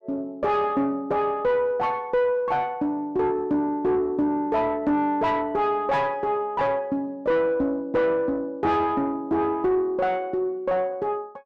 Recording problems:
distorted audio; soft clipping, signal-to-distortion ratio 9 dB

